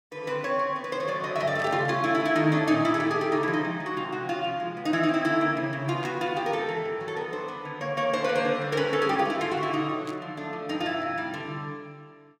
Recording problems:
burst of static; at 1.5 s, at 6 s and at 10 s; peak -12 dB vs average level

